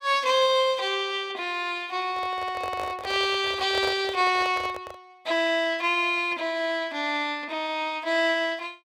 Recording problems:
handling noise; from 2 to 5 s; peak -4 dB vs average level

